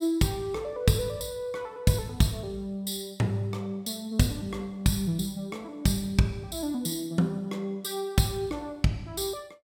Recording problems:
none

